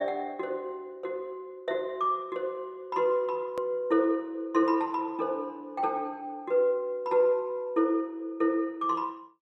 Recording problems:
edit click; at 3.5 s

